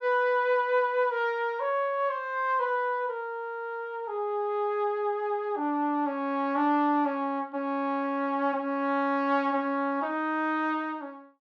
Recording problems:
none

